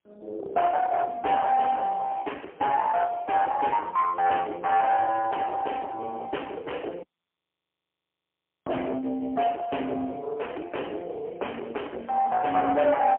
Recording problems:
phone line; 300 Hz to 2.7 kHz, AMR-NB, then MP3
distorted audio; soft clipping, signal-to-distortion ratio 10 dB
audio cutting out; at 7 s for 1.5 s

